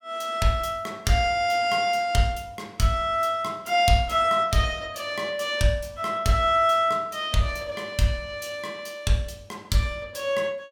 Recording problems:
none

